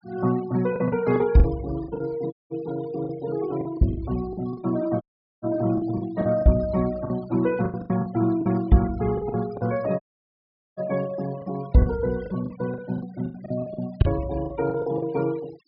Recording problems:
treble cut off; nothing above 5.2 kHz
denoising artefacts; signal-to-artefact ratio 20 dB
lost packets; 12% of the sound replaced, filled with the last packet
audio cutting out; at 2.5 s, at 5 s and at 10 s for 1 s

